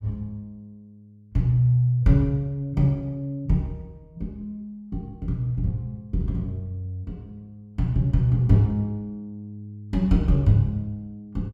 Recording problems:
none

